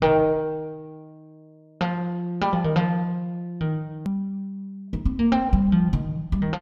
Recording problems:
hard cut with a click; at 4 s

